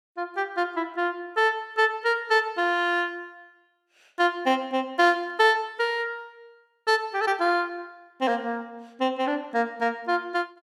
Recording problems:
burst of static; at 5 s; peak -13 dB vs average level

